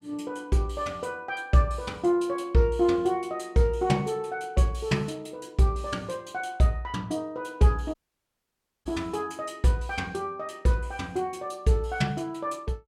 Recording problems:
dropout; at 8 s for 1 s

